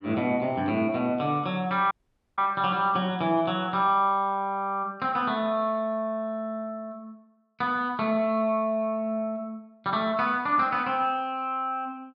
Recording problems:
audio cutting out; at 2 s

